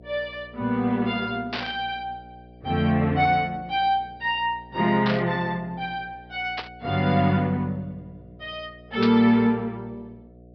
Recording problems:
low-pass filter; nothing above 5.5 kHz
hum; 60 Hz, harmonics up to 720 Hz, SNR 24 dB
burst of static; 4 times, first at 1.5 s; peak -1 dB vs average level

